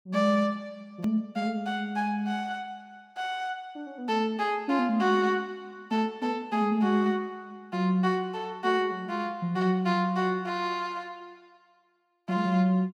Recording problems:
hard cut with a click; at 1 s

